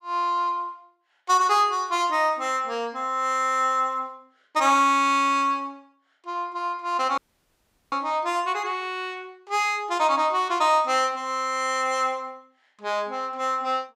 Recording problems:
dropout; at 7 s for 0.5 s

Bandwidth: 15.5 kHz